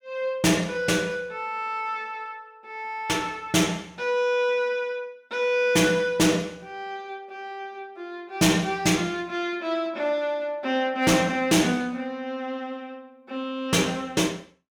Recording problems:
distorted audio; hard clipping, signal-to-distortion ratio 12 dB

